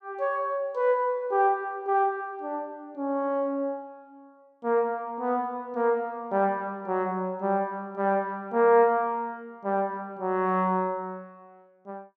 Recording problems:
none

